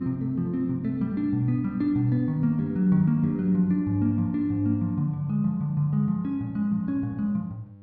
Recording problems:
hum; 50 Hz, harmonics up to 800 Hz, SNR 21 dB

